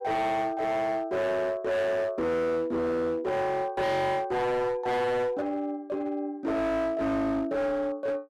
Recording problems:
distorted audio; hard clipping, uneven, signal-to-distortion ratio 8 dB

